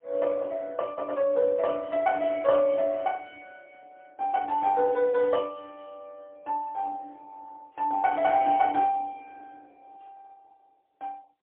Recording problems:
phone line; 240 Hz to 3 kHz, AMR-NB, then MP3

